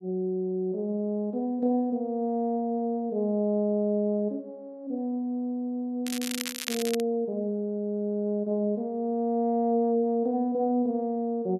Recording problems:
crackling; at 6 s; loose cable, SNR 6 dB

